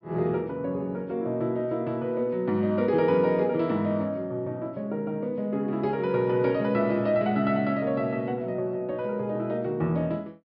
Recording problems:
treble missing; nothing above 5.5 kHz

